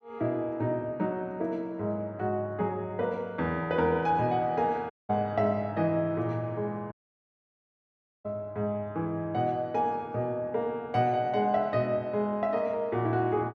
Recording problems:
audio cutting out; at 5 s and at 7 s for 1.5 s

